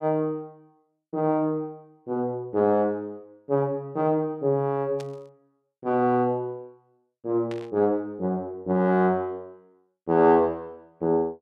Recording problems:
static burst; at 5 s and at 7.5 s; peak -12 dB vs average level

